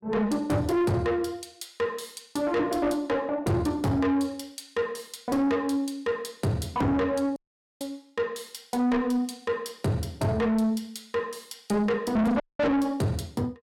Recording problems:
distortion; soft clipping, signal-to-distortion ratio 7 dB
audio cutting out; at 7.5 s and at 12 s

